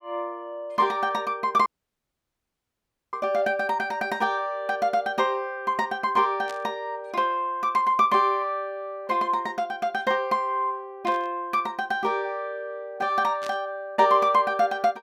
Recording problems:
dropout; at 1.5 s for 1.5 s
burst of static; at 6.5 s, at 11 s and at 13 s; peak -9 dB vs average level

